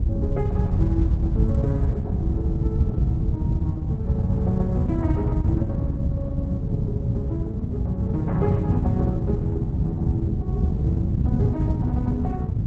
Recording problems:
lossy compression; Opus, log-spectral distance 2 dB
wind noise; below 130 Hz, SNR -7 dB

